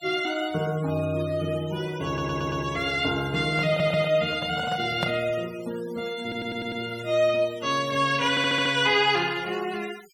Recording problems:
noise reduction artefacts; signal-to-artefact ratio 19 dB
audio stuttering; 4 times, first at 2 s
microphone handling noise; from 3.5 to 5.5 s; peak +1 dB vs average level

